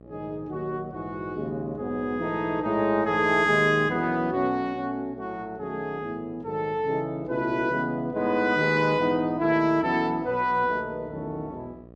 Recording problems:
hum; 60 Hz, harmonics up to 1.3 kHz, SNR 22 dB

